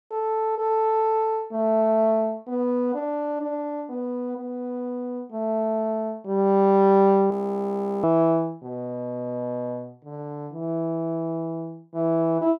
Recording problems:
audio freezing; at 7.5 s for 0.5 s

